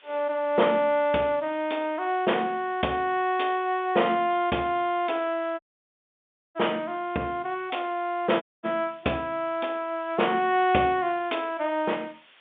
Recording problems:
telephone audio; 240 Hz to 3.5 kHz, G.711
background hiss; SNR 29 dB
dropout; at 5.5 s for 1 s and at 8.5 s

